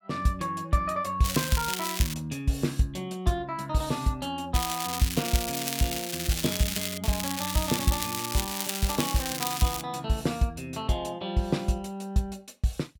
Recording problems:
crackling; at 1 s, from 4.5 to 7 s and from 7 to 10 s; loose cable, SNR 2 dB

